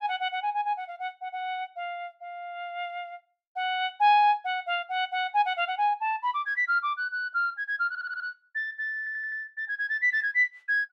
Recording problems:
audio stuttering; at 8 s and at 9 s

